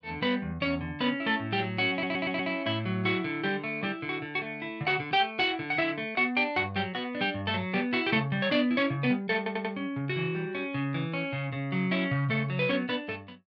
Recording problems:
stutter; at 2 s and at 9.5 s

